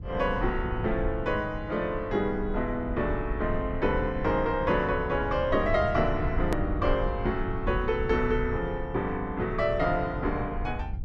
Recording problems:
low-frequency rumble; below 90 Hz, SNR 8 dB
hard cut with a click; at 6.5 s

